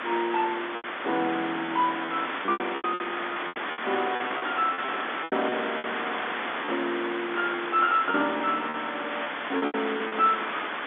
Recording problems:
phone line; 220 Hz to 3.6 kHz, G.711
background hiss; SNR 3 dB
lost packets; 11% of the sound replaced, filled with repeated pitch periods
microphone handling noise; from 3.5 to 7 s; peak -9 dB vs average level

